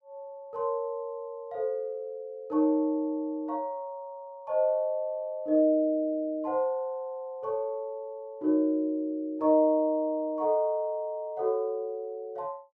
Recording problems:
none

